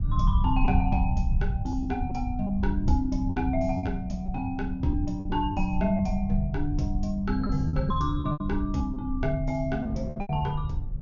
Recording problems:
low-pass filter; nothing above 6.9 kHz
low-frequency rumble; below 90 Hz, SNR 2 dB
wind on the microphone; below 330 Hz, SNR 20 dB
lost packets; 7% of the sound replaced, filled with repeated pitch periods

